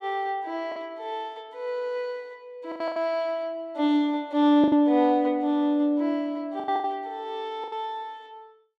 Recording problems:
packet loss; 6% of the sound replaced, filled with the last packet

